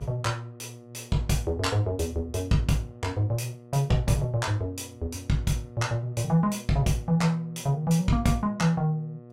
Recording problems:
hum; 60 Hz, harmonics up to 1.2 kHz, SNR 20 dB

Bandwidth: 16 kHz